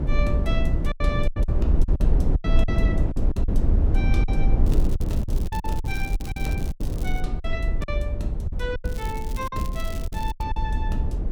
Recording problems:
low-frequency rumble; below 64 Hz, SNR 1 dB
wind noise; below 80 Hz, SNR -7 dB
packet loss; 11% of the sound replaced, filled with silence
crackling; from 4.5 to 7 s and from 9 to 10 s; loose cable, SNR 11 dB

